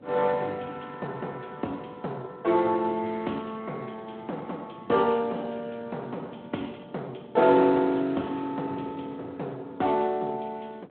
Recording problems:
telephone audio; 240 Hz to 3.5 kHz, Speex
wind on the microphone; below 460 Hz, SNR 20 dB

